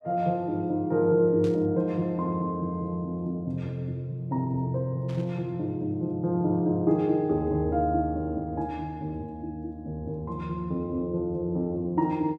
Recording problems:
burst of static; at 1.5 s and at 5 s; peak -14 dB vs average level

